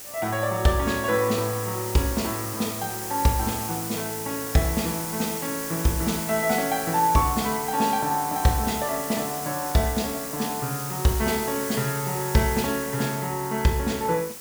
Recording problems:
hiss; SNR 6 dB

